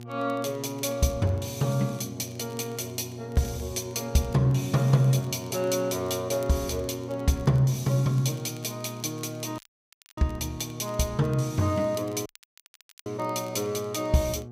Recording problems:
hum; 60 Hz, harmonics up to 840 Hz, SNR 13 dB
crackling; vinyl, SNR 27 dB
audio cutting out; at 9.5 s for 0.5 s and at 12 s for 1 s

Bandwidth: 15.5 kHz